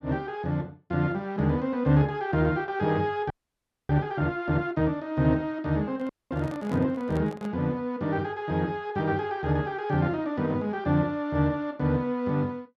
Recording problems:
frozen audio; at 3.5 s for 0.5 s and at 6 s
handling noise; from 6 to 7.5 s; peak -7 dB vs average level

